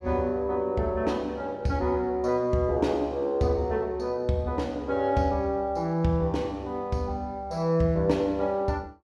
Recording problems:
none

